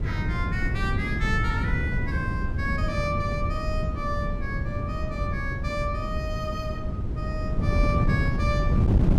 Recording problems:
wind noise; below 160 Hz, SNR -4 dB

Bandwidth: 14.5 kHz